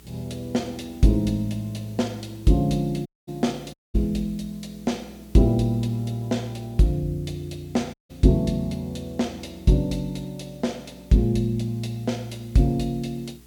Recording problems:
electrical hum; 60 Hz, harmonics up to 420 Hz, SNR 26 dB
hiss; slope 0 dB per octave, SNR 28 dB
audio cutting out; at 3 s, at 3.5 s and at 8 s

